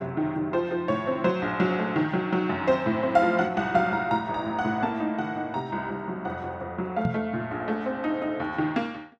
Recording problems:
microphone bump; at 7 s; peak +3 dB vs average level

